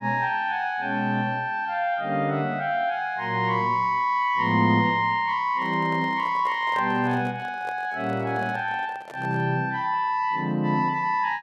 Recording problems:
microphone handling noise; from 5.5 to 9.5 s; peak -10 dB vs average level

